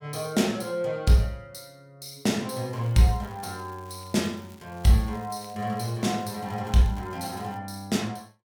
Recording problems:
crackling; from 2.5 to 7.5 s; loose cable, SNR 27 dB

